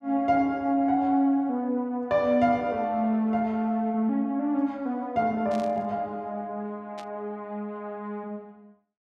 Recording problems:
static burst; at 5.5 s and at 7 s; peak -13 dB vs average level

